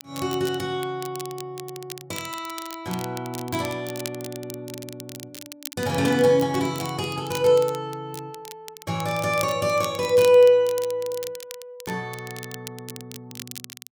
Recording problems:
crackling; vinyl, SNR 16 dB

